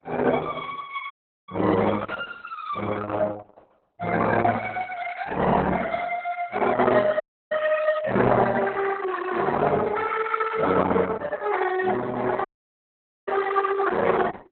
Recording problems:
lossy compression; Opus, then Opus, log-spectral distance 5 dB, nothing above 3.8 kHz
dropout; at 1 s, at 7 s and at 12 s for 1 s

